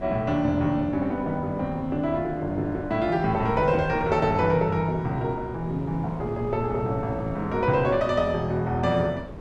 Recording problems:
wind noise; below 410 Hz, SNR 13 dB

